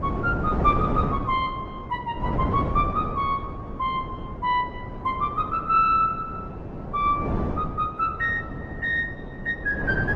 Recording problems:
lossy codec; Opus, log-spectral distance 2 dB
wind noise; below 420 Hz, SNR 6 dB

